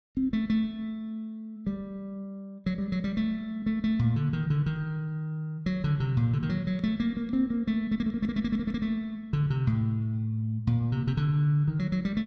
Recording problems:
none

